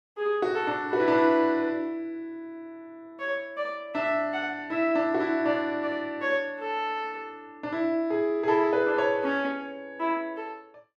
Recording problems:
none

